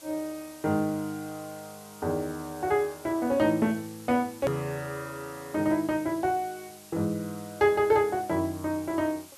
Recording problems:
background hiss; slope 0 dB per octave, SNR 20 dB
click at an edit; at 4.5 s

